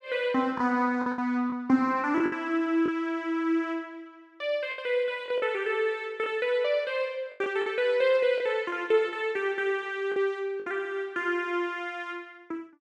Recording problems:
lost packets; 5% of the sound replaced, filled with the last packet

